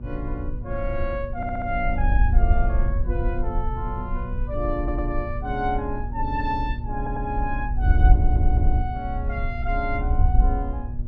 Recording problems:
electrical hum; 60 Hz, harmonics up to 600 Hz, SNR 8 dB
wind noise; below 66 Hz, SNR -3 dB
audio stuttering; 4 times, first at 1.5 s

